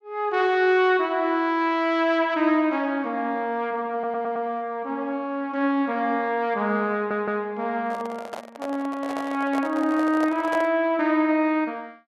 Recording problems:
audio stuttering; at 4 s and at 7 s
microphone handling noise; from 8 to 11 s; peak -4 dB vs average level

